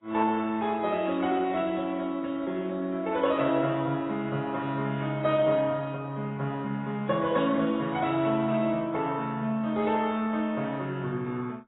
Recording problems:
lossy compression; MP2, then AAC, log-spectral distance 3 dB, nothing above 3.2 kHz

